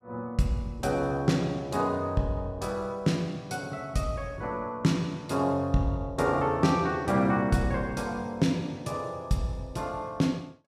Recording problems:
none

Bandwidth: 14.5 kHz